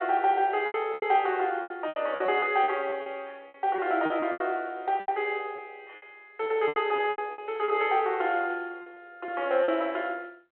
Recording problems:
phone line; 340 Hz to 3.4 kHz, G.726
lost packets; 13% of the sound replaced, filled with repeated pitch periods

